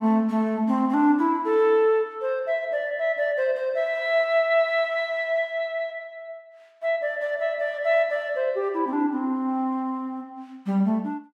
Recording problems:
none

